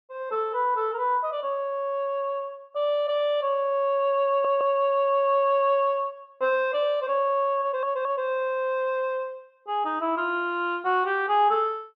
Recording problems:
audio stuttering; at 4.5 s and at 7.5 s

